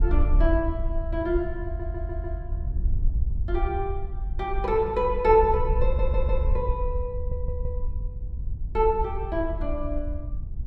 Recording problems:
wind noise; below 66 Hz, SNR 3 dB
stutter; at 1.5 s, at 6 s and at 7 s

